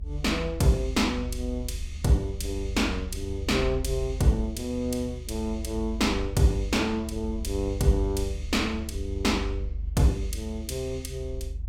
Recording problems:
rumble; below 74 Hz, strongest tone 50 Hz, SNR 7 dB

